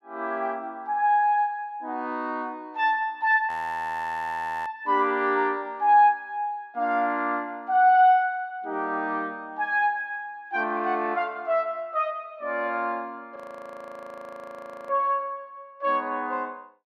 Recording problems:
audio freezing; at 3.5 s for 1 s and at 13 s for 1.5 s

